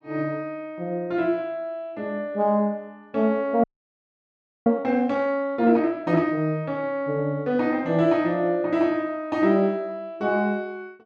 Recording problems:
audio freezing; at 3.5 s for 1 s

